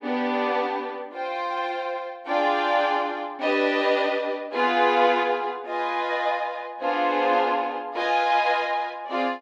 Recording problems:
none

